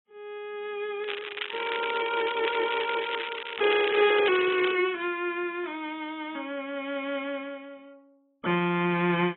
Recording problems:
treble missing; nothing above 3.4 kHz
lossy codec; AAC, log-spectral distance 7 dB
crackling; from 1 to 4.5 s; loose cable, SNR 6 dB

